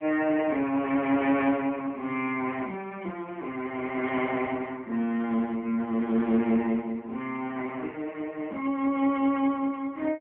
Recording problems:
phone line; 190 Hz to 3.3 kHz, AMR-NB

